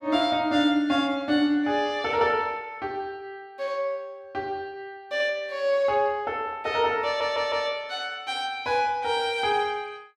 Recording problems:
audio stuttering; at 7 s

